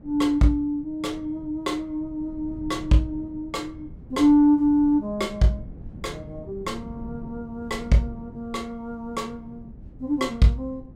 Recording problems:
wind on the microphone; below 200 Hz, SNR 18 dB

